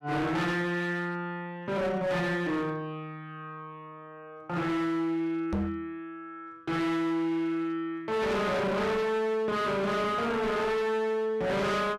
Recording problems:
distorted audio; hard clipping, signal-to-distortion ratio 7 dB
knock on the microphone; at 5.5 s; peak +2 dB vs average level

